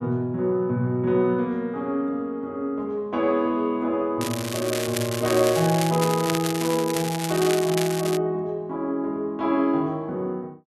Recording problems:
crackle; from 4 to 8 s; loose cable, SNR 7 dB

